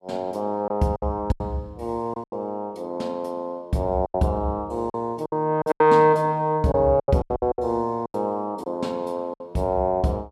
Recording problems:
lost packets; 10% of the sound replaced, filled with silence

